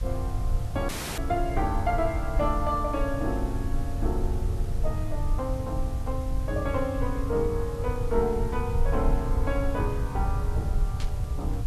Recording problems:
background hiss; slope -2 dB per octave, SNR 18 dB
rumble; below 84 Hz, SNR 0 dB
dropout; at 1 s
burst of static; at 11 s; peak -5 dB vs average level

